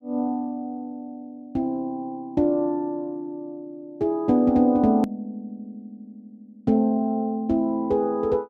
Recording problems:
hard cut with a click; at 5 s

